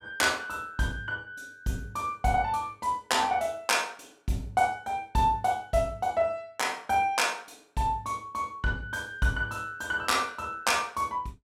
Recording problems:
none

